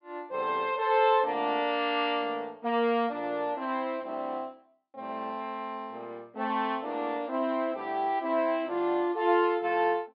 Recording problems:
treble cut off; nothing above 5.5 kHz

